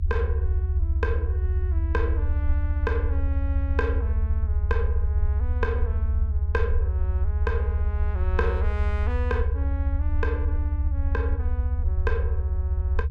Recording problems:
rumble; below 78 Hz, SNR -9 dB

